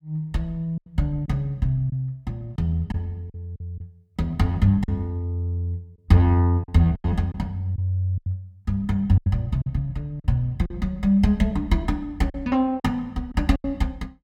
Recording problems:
lost packets; 7% of the sound replaced, filled with silence

